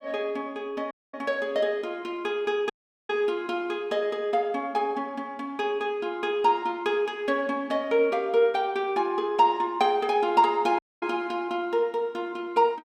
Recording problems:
audio cutting out; at 1 s, at 2.5 s and at 11 s

